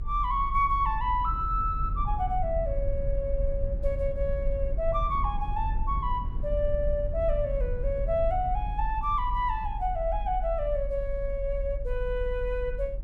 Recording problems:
low-frequency rumble; below 54 Hz, SNR 4 dB

